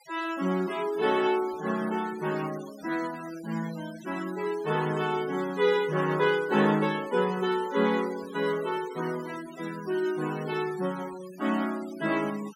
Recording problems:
denoising artefacts; signal-to-artefact ratio 17 dB

